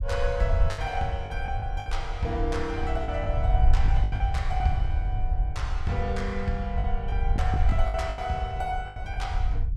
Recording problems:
rumble; below 66 Hz, SNR -2 dB
packet loss; 8% of the sound replaced, filled with the last packet

